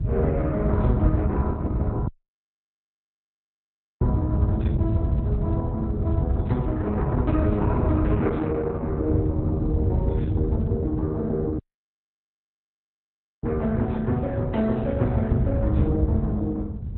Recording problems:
lossy codec; Opus, log-spectral distance 2 dB, nothing above 4 kHz
wind noise; below 130 Hz, SNR -1 dB
dropout; at 2 s for 2 s and at 12 s for 2 s

